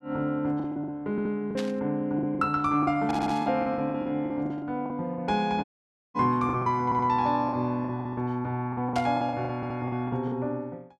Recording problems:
lost packets; 14% of the sound replaced, filled with the last packet
audio stuttering; 4 times, first at 1 s
static burst; at 1.5 s, at 3 s and at 9 s; peak -5 dB vs average level
audio cutting out; at 5.5 s for 0.5 s

